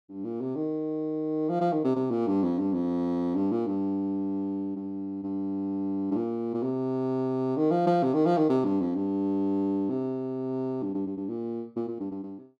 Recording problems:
none

